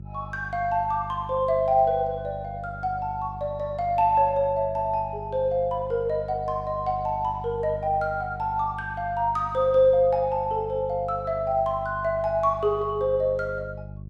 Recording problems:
hum; 50 Hz, harmonics up to 400 Hz, SNR 15 dB

